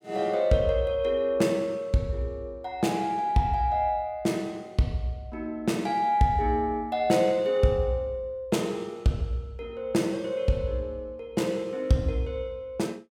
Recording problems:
none

